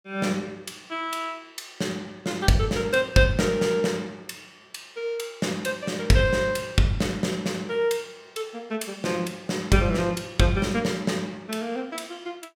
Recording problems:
none

